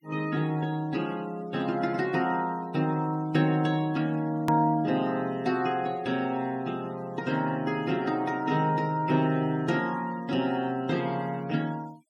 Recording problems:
denoising artefacts; signal-to-artefact ratio 25 dB
hard cut with a click; at 4.5 s

